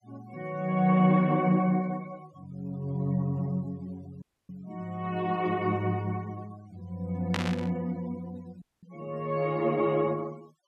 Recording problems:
noise reduction artefacts; signal-to-artefact ratio 27 dB
dropout; at 4 s and at 8.5 s
static burst; at 7.5 s; peak +2 dB vs average level

